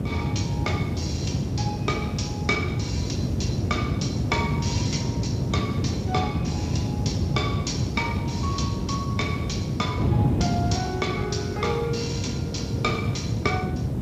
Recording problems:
codec artefacts; Speex, log-spectral distance 3 dB
hiss; slope -3 dB per octave, SNR 24 dB
rumble; below 130 Hz, SNR 11 dB
wind on the microphone; below 260 Hz, SNR -4 dB

